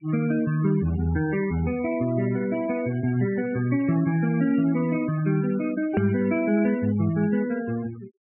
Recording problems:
denoising artefacts; signal-to-artefact ratio 17 dB
hard cut with a click; at 6 s

